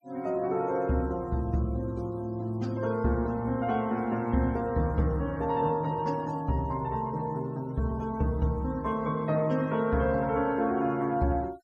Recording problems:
noise reduction artefacts; signal-to-artefact ratio 27 dB

